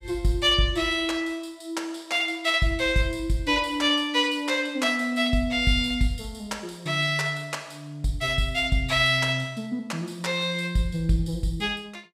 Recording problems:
none

